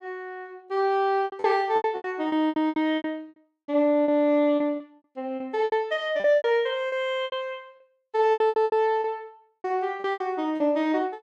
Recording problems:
lost packets; 16% of the sound replaced, filled with repeated pitch periods

